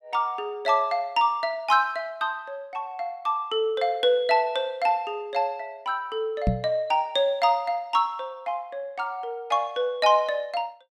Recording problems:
microphone thump; at 6.5 s; peak +5 dB vs average level

